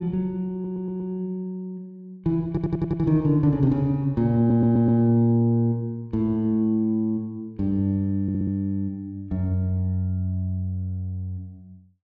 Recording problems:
stutter; 4 times, first at 0.5 s

